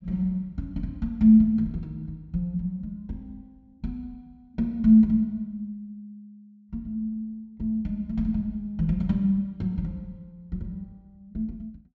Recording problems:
low-pass filter; nothing above 8 kHz

